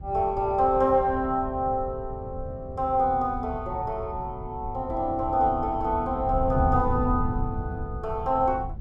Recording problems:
wind on the microphone; below 130 Hz, SNR 9 dB

